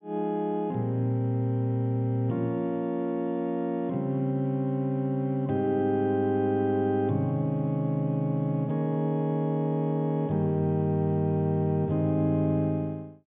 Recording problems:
treble missing; nothing above 3.5 kHz

